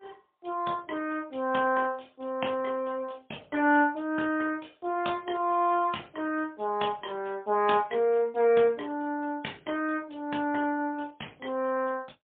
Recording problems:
phone line; 220 Hz to 3.5 kHz, AMR-NB, then MP3

